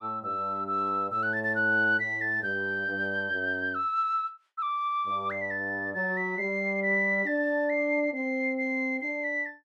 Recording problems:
none

